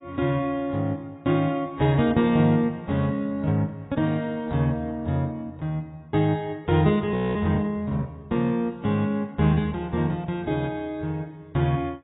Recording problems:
lossy compression; AAC, log-spectral distance 2 dB, nothing above 3.8 kHz
frozen audio; at 7 s

